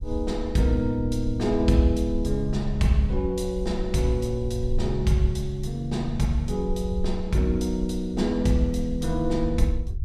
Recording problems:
low-frequency rumble; below 64 Hz, SNR 9 dB

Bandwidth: 14.5 kHz